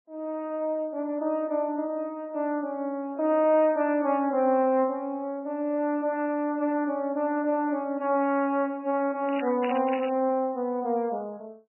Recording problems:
lossy compression; MP3, log-spectral distance 2 dB, nothing above 2.4 kHz
crackle; at 9.5 s; loose cable, SNR 15 dB

